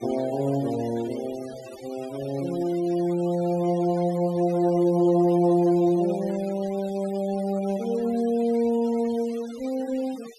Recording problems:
denoising artefacts; signal-to-artefact ratio 21 dB

